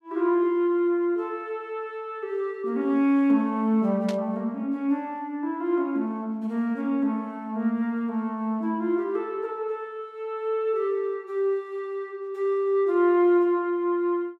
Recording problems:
burst of static; at 4 s; peak -8 dB vs average level

